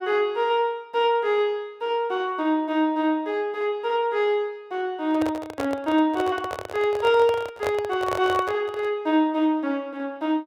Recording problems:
microphone handling noise; from 5 to 9 s; peak -1 dB vs average level

